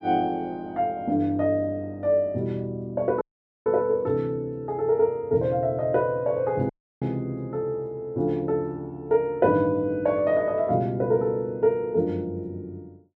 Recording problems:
audio cutting out; at 3 s and at 6.5 s

